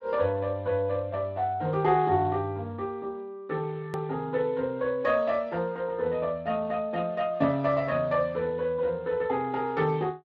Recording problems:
lossy codec; Speex, log-spectral distance 2 dB
edit click; at 4 s

